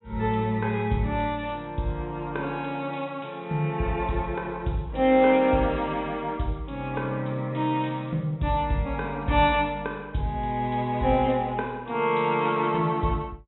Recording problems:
treble missing; nothing above 3.9 kHz

